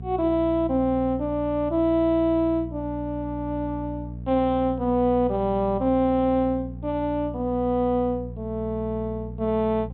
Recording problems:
treble cut off; nothing above 4 kHz
hum; 60 Hz, harmonics up to 480 Hz, SNR 12 dB

